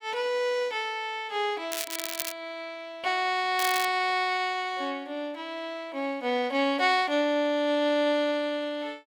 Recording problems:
crackle; at 1.5 s and at 3.5 s; loose cable, SNR 6 dB

